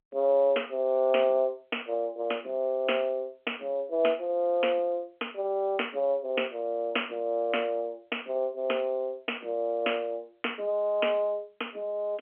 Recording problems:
phone line; 300 Hz to 3.2 kHz, G.711

